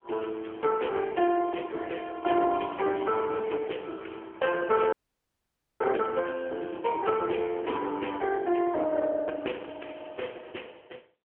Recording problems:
telephone audio; 280 Hz to 3.1 kHz, AMR-NB
audio freezing; at 5 s for 1 s

